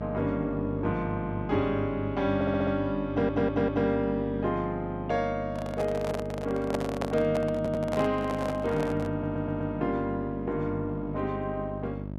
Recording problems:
electrical hum; 50 Hz, harmonics up to 1 kHz, SNR 8 dB
stutter; 4 times, first at 2.5 s
handling noise; from 5.5 to 9.5 s; peak +2 dB vs average level

